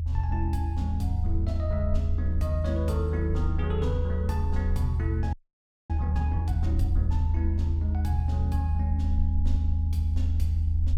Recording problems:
rumble; below 80 Hz, strongest tone 80 Hz, SNR -7 dB
audio freezing; at 5.5 s for 0.5 s

